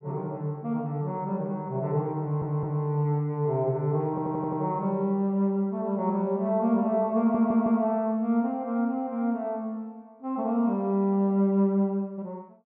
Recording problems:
audio stuttering; at 2 s, at 4 s and at 7 s

